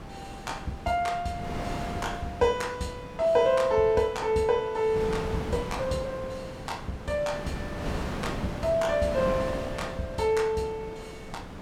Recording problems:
wind on the microphone; below 770 Hz, SNR 9 dB

